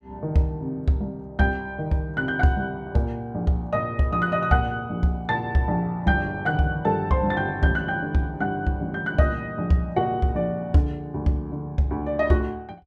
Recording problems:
none

